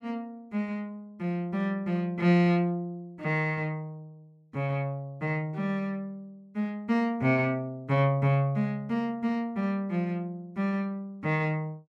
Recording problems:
none

